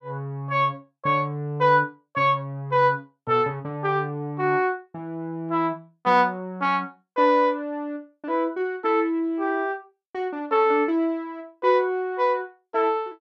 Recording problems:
none

